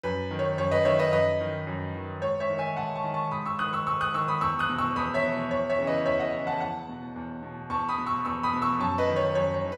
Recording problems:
none

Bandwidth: 13 kHz